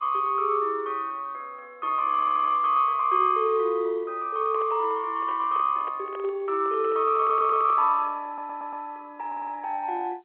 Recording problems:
phone line; 340 Hz to 3.4 kHz, G.711
stutter; 4 times, first at 2 s
handling noise; from 4.5 to 8 s; peak -13 dB vs average level

